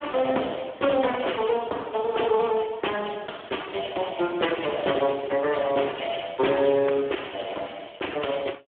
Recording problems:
phone line; 260 Hz to 3.4 kHz, Speex
crackling; at 7 s; loose cable, SNR 27 dB

